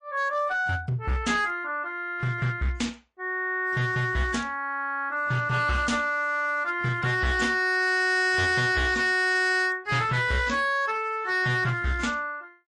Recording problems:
codec artefacts; MP3, then AAC, log-spectral distance 2 dB, nothing above 8.5 kHz
distorted audio; hard clipping, uneven, signal-to-distortion ratio 11 dB

